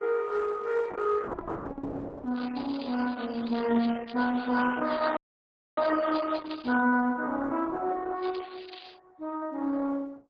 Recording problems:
lossy codec; MP3, then Opus, log-spectral distance 7 dB
crackling; from 2.5 to 7 s and at 8 s; loose cable, SNR 19 dB
dropout; at 5 s for 0.5 s

